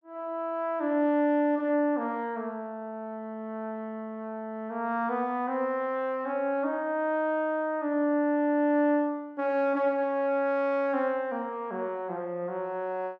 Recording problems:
none

